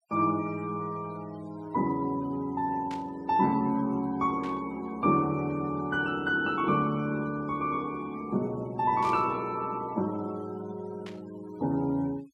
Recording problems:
noise reduction artefacts; signal-to-artefact ratio 23 dB
burst of static; 4 times, first at 3 s; peak -12 dB vs average level

